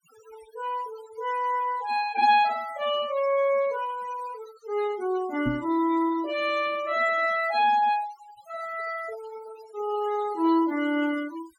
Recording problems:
denoising artefacts; signal-to-artefact ratio 18 dB
microphone thump; at 5.5 s; peak +1 dB vs average level

